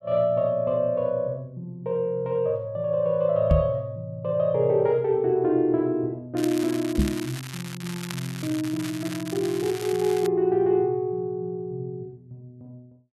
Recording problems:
knock on the microphone; at 3.5 s and at 7 s; peak +8 dB vs average level
crackling; from 6.5 to 10 s; loose cable, SNR 13 dB

